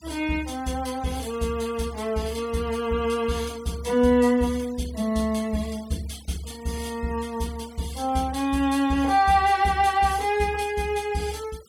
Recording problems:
noise reduction artefacts; signal-to-artefact ratio 20 dB

